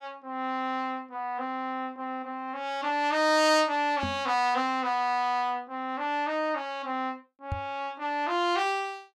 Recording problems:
knock on the microphone; at 4 s and at 7.5 s; peak -1 dB vs average level

